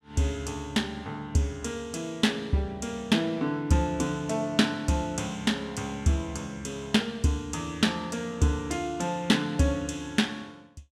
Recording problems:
none

